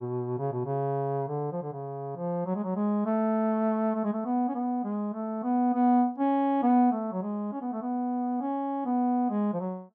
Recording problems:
none

